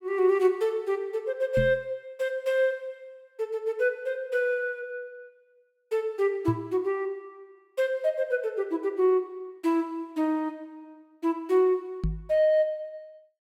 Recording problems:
microphone bump; at 1.5 s, at 6.5 s and at 12 s; peak +2 dB vs average level

